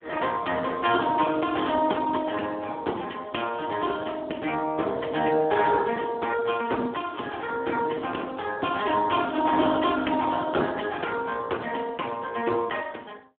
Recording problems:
phone line; 260 Hz to 3.4 kHz, Speex

